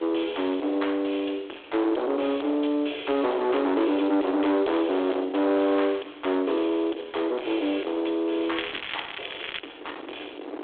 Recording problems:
telephone audio; 280 Hz to 3.5 kHz, G.726
distorted audio; soft clipping, signal-to-distortion ratio 7 dB
background hiss; SNR 29 dB
wind noise; below 930 Hz, SNR 19 dB
crackling; from 8.5 to 9.5 s; loose cable, SNR 8 dB

